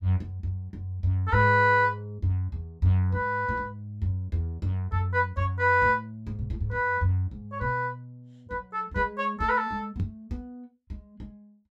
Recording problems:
knock on the microphone; at 10 s; peak +2 dB vs average level

